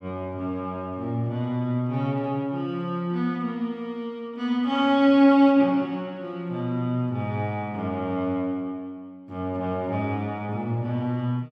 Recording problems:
none

